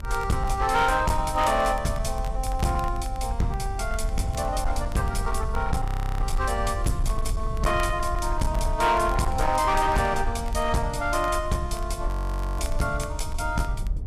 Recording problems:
distortion; hard clipping, uneven, signal-to-distortion ratio 12 dB
rumble; below 64 Hz, SNR 5 dB
crackling; vinyl, SNR 23 dB
frozen audio; at 6 s and at 12 s for 0.5 s

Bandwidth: 14.5 kHz